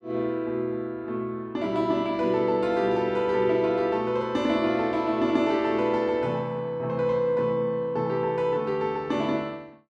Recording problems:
none

